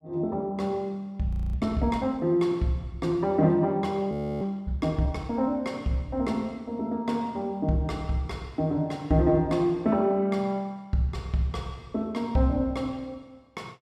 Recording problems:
frozen audio; at 1.5 s and at 4 s

